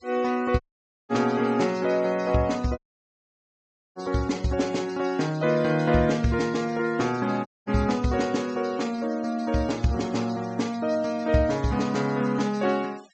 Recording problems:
treble cut off; nothing above 8 kHz
denoising artefacts; signal-to-artefact ratio 21 dB
audio cutting out; at 0.5 s, at 3 s for 1 s and at 7.5 s

